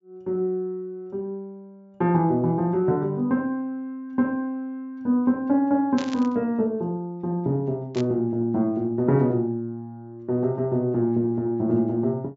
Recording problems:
low-pass filter; nothing above 7.4 kHz
burst of static; at 6 s and at 8 s; peak -7 dB vs average level

